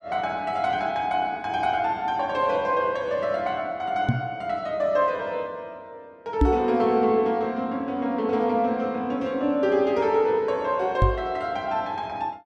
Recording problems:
microphone thump; at 4 s, at 6.5 s and at 11 s; peak +7 dB vs average level

